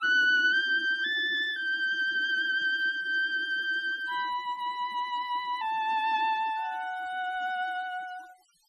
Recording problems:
denoising artefacts; signal-to-artefact ratio 23 dB

